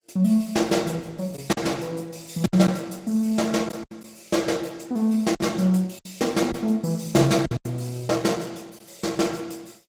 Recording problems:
lossy codec; Opus, log-spectral distance 5 dB
packet loss; 5% of the sound replaced, filled with silence

